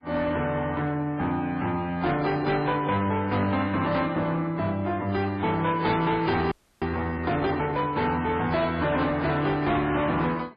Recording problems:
lossy codec; AAC, then MP3, log-spectral distance 3 dB, nothing above 4.1 kHz
distortion; soft clipping, signal-to-distortion ratio 10 dB
frozen audio; at 6.5 s

